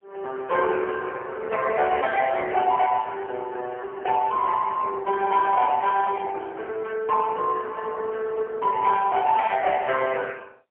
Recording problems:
telephone audio; 280 Hz to 3 kHz, AMR-NB, then MP3

